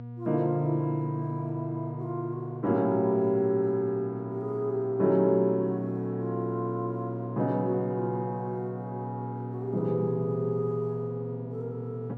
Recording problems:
electrical hum; 60 Hz, harmonics up to 720 Hz, SNR 9 dB

